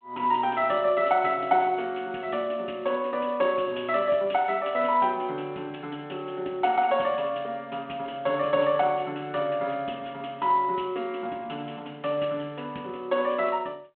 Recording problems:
telephone audio; 190 Hz to 3.4 kHz, G.726

